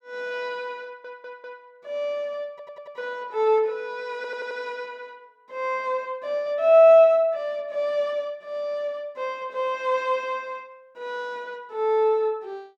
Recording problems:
audio stuttering; at 1 s, at 2.5 s and at 4 s

